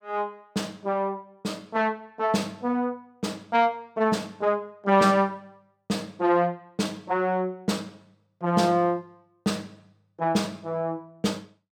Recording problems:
none

